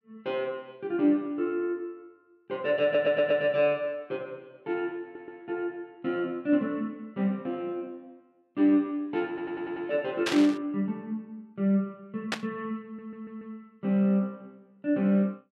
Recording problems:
audio stuttering; 4 times, first at 3 s
burst of static; at 10 s and at 12 s; peak +3 dB vs average level

